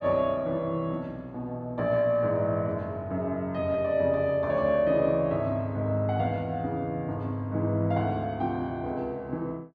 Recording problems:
none

